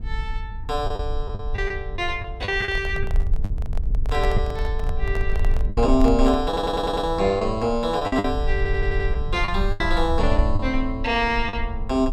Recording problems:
rumble; below 54 Hz, strongest tone 24 Hz, SNR 4 dB
lost packets; 7% of the sound replaced, filled with the last packet
microphone handling noise; from 2.5 to 7 s; peak -4 dB vs average level
stutter; at 6.5 s and at 8.5 s

